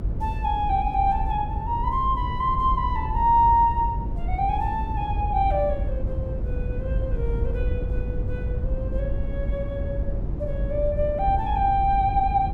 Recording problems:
rumble; below 96 Hz, SNR 5 dB

